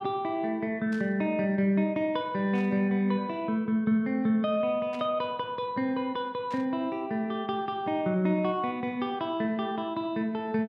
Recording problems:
burst of static; 4 times, first at 1 s; peak -14 dB vs average level

